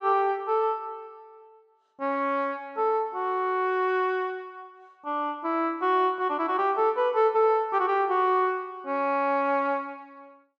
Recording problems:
none

